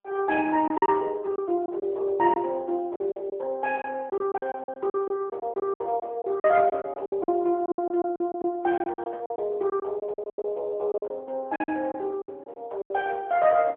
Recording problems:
telephone audio; 280 Hz to 3.7 kHz, AMR-NB
lost packets; 13% of the sound replaced, filled with silence

